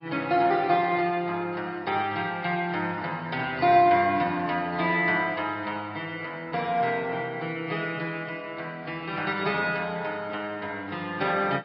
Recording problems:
low-pass filter; nothing above 4.5 kHz
codec artefacts; AAC, log-spectral distance 2 dB

